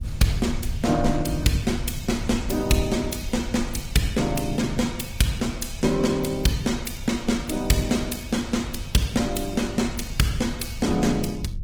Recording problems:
lossy compression; Opus, log-spectral distance 5 dB, nothing above 19 kHz
rumble; below 94 Hz, SNR 10 dB

